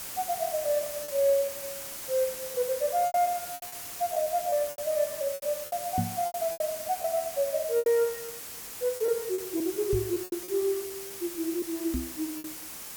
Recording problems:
hiss; slope -1 dB per octave, SNR 7 dB
packet loss; 11% of the sound replaced, filled with repeated pitch periods
knock on the microphone; at 6 s, at 10 s and at 12 s; peak +4 dB vs average level

